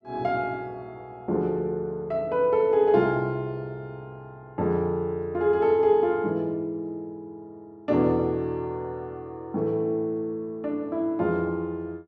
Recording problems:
none

